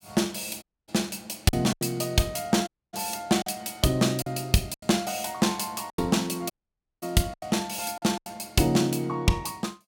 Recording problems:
lost packets; 7% of the sound replaced, filled with silence
dropout; at 0.5 s, at 2.5 s and at 6.5 s for 0.5 s

